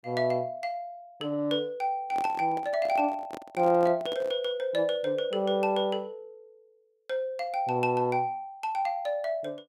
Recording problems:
handling noise; from 2 to 4.5 s; peak -7 dB vs average level

